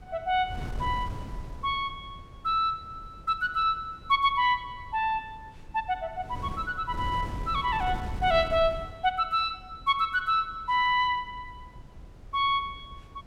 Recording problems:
wind noise; below 160 Hz, SNR 14 dB

